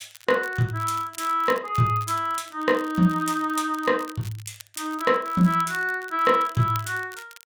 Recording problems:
crackle; vinyl, SNR 21 dB

